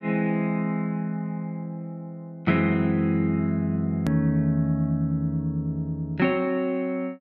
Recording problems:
click at an edit; at 4 s

